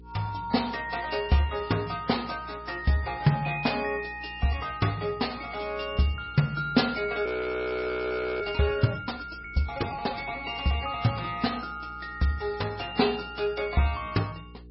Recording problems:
codec artefacts; MP3, log-spectral distance 6 dB, nothing above 5.3 kHz
hum; 60 Hz, harmonics up to 480 Hz, SNR 20 dB
frozen audio; at 7.5 s for 1 s

